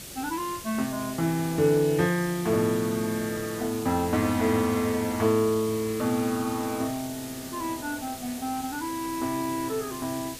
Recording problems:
background hiss; SNR 12 dB

